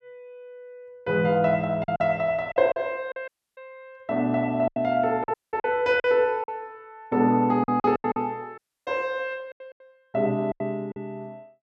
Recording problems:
packet loss; 9% of the sound replaced, filled with silence
audio cutting out; at 3.5 s, at 5.5 s and at 8.5 s

